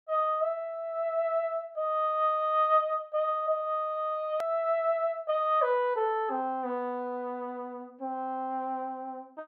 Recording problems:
edit click; at 4.5 s

